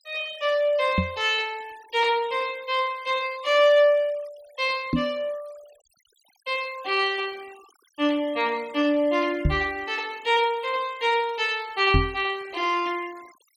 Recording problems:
noise reduction artefacts; signal-to-artefact ratio 24 dB
microphone bump; 4 times, first at 1 s; peak +6 dB vs average level

